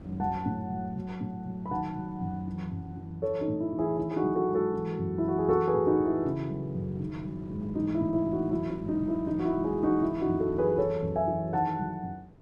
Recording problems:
wind on the microphone; below 330 Hz, SNR 19 dB

